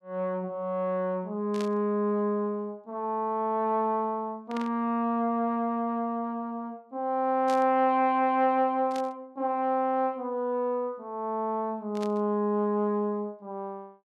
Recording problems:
static burst; 5 times, first at 1.5 s; peak -9 dB vs average level

